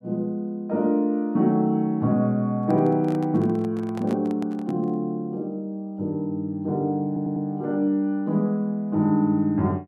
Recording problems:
microphone handling noise; from 2.5 to 5 s; peak -9 dB vs average level
audio stuttering; at 7 s

